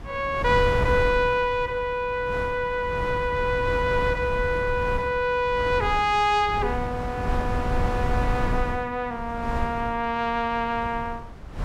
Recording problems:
wind noise; below 200 Hz, SNR 7 dB

